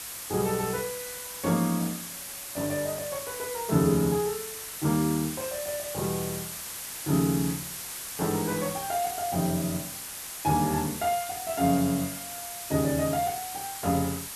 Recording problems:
hiss; slope +1 dB per octave, SNR 6 dB

